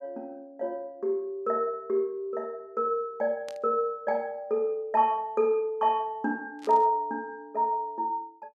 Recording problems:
burst of static; at 3.5 s and at 6.5 s; peak -13 dB vs average level

